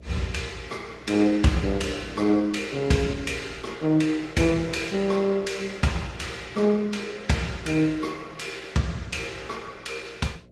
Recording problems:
lossy compression; Opus, then Vorbis, log-spectral distance 4 dB, nothing above 12 kHz
electrical hum; 60 Hz, harmonics up to 660 Hz, SNR 24 dB

